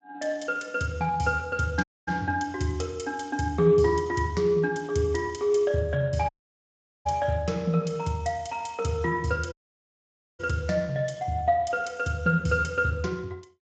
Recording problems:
codec artefacts; Speex, log-spectral distance 3 dB, nothing above 7.6 kHz
dropout; at 2 s, at 6.5 s for 1 s and at 9.5 s for 1 s

